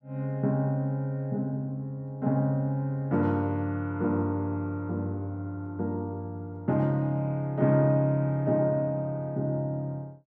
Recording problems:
none

